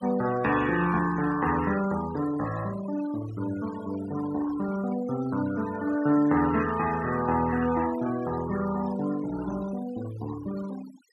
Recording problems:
denoising artefacts; signal-to-artefact ratio 14 dB

